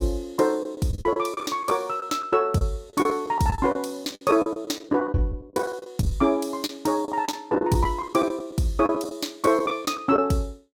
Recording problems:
packet loss; 13% of the sound replaced, filled with the last packet

